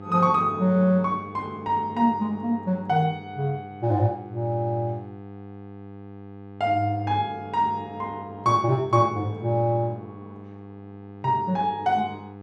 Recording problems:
hum; 50 Hz, harmonics up to 1.3 kHz, SNR 17 dB

